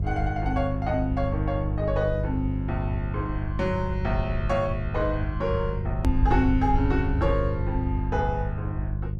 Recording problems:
hum; 50 Hz, harmonics up to 400 Hz, SNR 2 dB
low-frequency rumble; below 80 Hz, SNR 5 dB
click at an edit; at 6 s

